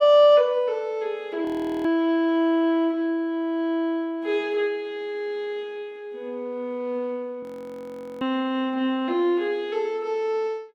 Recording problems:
frozen audio; at 1.5 s and at 7.5 s for 1 s

